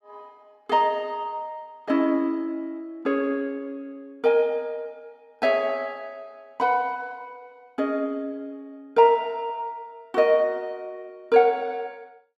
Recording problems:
none

